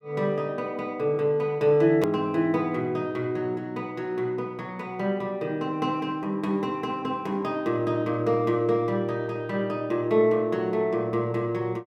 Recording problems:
hard cut with a click; at 2 s

